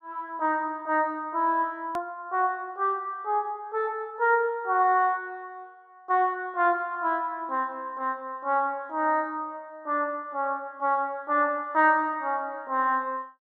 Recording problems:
click at an edit; at 2 s

